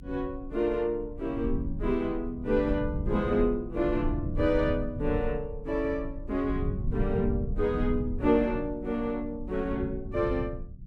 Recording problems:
low-frequency rumble; below 120 Hz, SNR 7 dB

